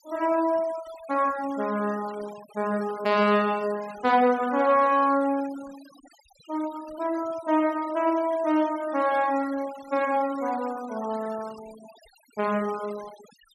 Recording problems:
noise reduction artefacts; signal-to-artefact ratio 20 dB

